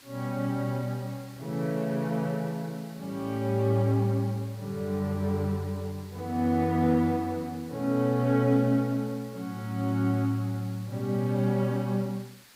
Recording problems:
background hiss; SNR 23 dB

